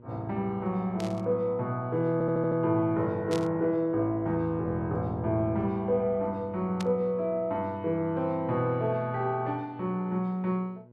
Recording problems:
hum; 60 Hz, harmonics up to 960 Hz, SNR 24 dB
burst of static; at 1 s, at 3.5 s and at 7 s; peak -6 dB vs average level
stutter; at 2 s

